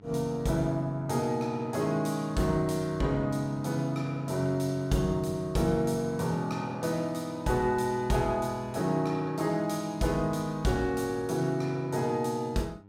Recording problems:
electrical hum; 50 Hz, harmonics up to 1.4 kHz, SNR 24 dB

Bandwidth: 16.5 kHz